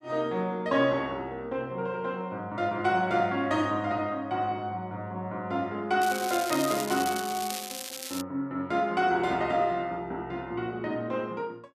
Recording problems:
crackle; from 6 to 8 s; loose cable, SNR 7 dB

